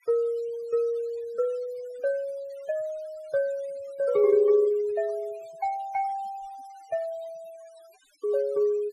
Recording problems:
denoising artefacts; signal-to-artefact ratio 25 dB

